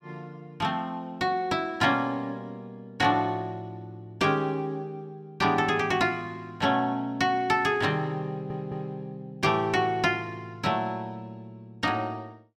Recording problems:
stutter; at 8.5 s

